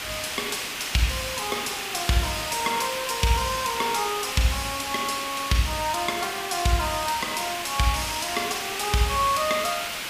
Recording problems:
background hiss; SNR 4 dB

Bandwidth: 15 kHz